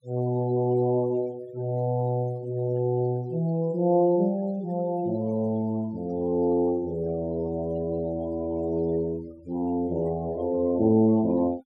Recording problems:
denoising artefacts; signal-to-artefact ratio 25 dB

